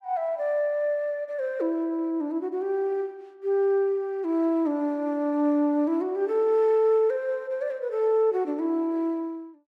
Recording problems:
none

